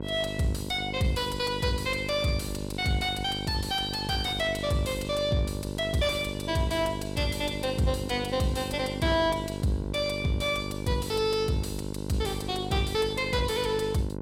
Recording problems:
distortion; soft clipping, signal-to-distortion ratio 9 dB
hum; 50 Hz, harmonics up to 1.1 kHz, SNR 7 dB

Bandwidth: 16 kHz